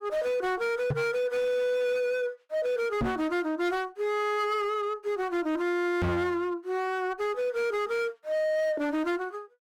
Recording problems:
distortion; hard clipping, signal-to-distortion ratio 8 dB
microphone bump; at 1 s, at 3 s and at 6 s; peak +4 dB vs average level

